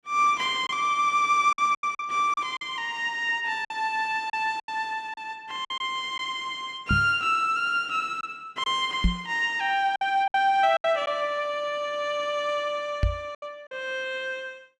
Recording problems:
lost packets; 6% of the sound replaced, filled with silence
microphone bump; at 7 s, at 9 s and at 13 s; peak +6 dB vs average level

